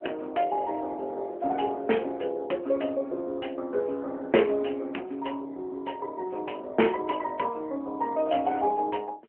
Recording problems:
telephone audio; 240 Hz to 3.2 kHz, AMR-NB

